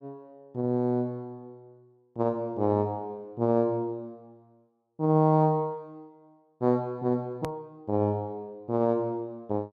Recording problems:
click at an edit; at 7.5 s

